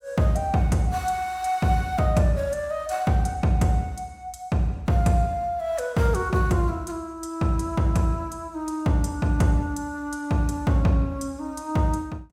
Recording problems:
none

